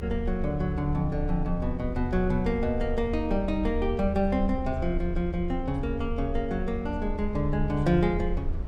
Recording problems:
low-frequency rumble; below 76 Hz, strongest tone 28 Hz, SNR 6 dB

